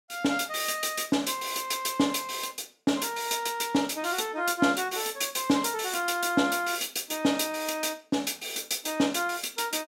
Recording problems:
none

